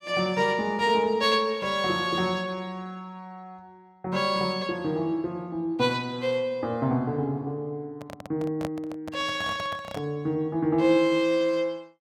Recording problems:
microphone handling noise; from 8 to 10 s; peak -4 dB vs average level

